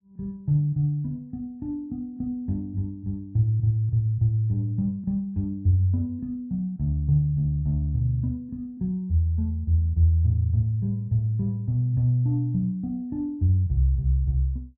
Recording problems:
none

